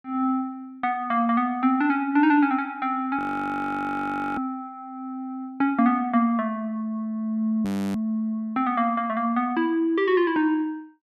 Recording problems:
audio freezing; at 3 s for 1 s and at 7.5 s

